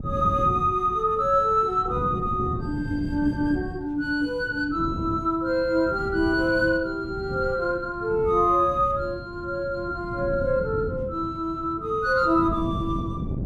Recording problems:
wind on the microphone; below 220 Hz, SNR 10 dB

